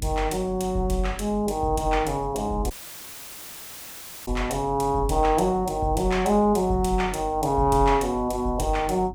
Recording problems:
hum; 50 Hz, harmonics up to 300 Hz, SNR 17 dB
dropout; at 2.5 s for 1.5 s

